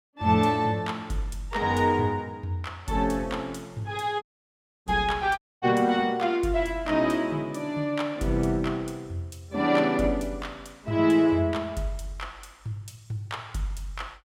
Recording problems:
audio cutting out; at 4 s for 0.5 s and at 5.5 s

